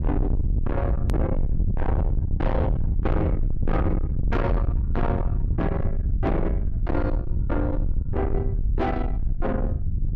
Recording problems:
distortion; soft clipping, signal-to-distortion ratio 6 dB
low-frequency rumble; below 110 Hz, SNR -2 dB
click at an edit; at 1 s

